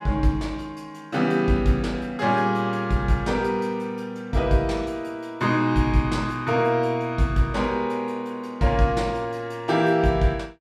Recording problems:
none

